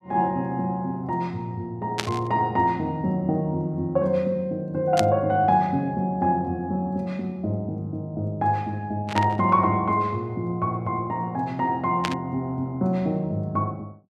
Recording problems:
static burst; 4 times, first at 2 s; peak +3 dB vs average level

